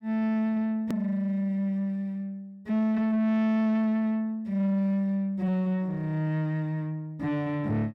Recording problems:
distortion; soft clipping, signal-to-distortion ratio 12 dB
edit click; at 1 s

